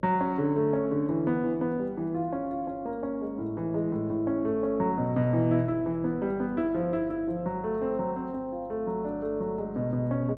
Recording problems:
hum; 50 Hz, harmonics up to 600 Hz, SNR 22 dB

